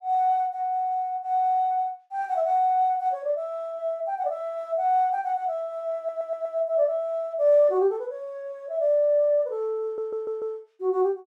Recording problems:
audio stuttering; at 6 s and at 10 s

